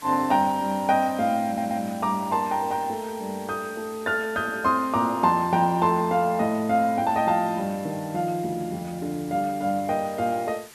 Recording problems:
background hiss; slope 0 dB per octave, SNR 20 dB
stutter; at 1.5 s

